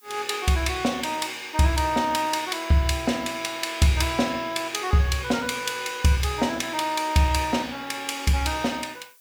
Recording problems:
background hiss; SNR 28 dB

